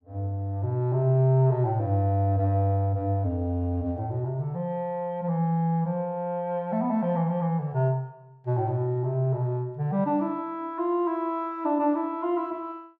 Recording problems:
none

